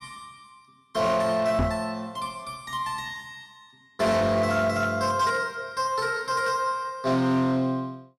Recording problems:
distortion; hard clipping, signal-to-distortion ratio 12 dB
microphone thump; at 1.5 s; peak +3 dB vs average level

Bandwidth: 14 kHz